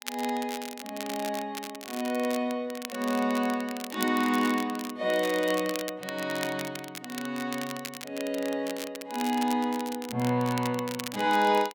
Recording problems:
crackle; vinyl, SNR 11 dB

